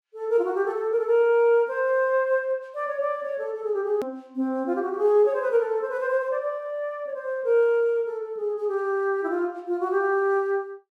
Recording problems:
hard cut with a click; at 4 s

